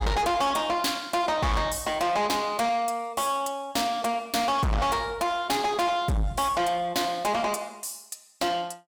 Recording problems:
distortion; soft clipping, signal-to-distortion ratio 6 dB

